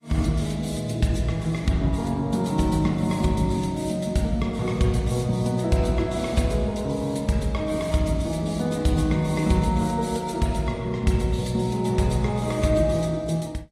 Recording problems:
codec artefacts; AAC, log-spectral distance 3 dB, nothing above 13.5 kHz

